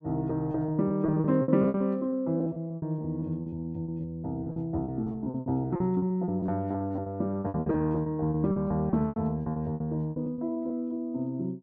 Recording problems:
lost packets; 19% of the sound replaced, filled with repeated pitch periods

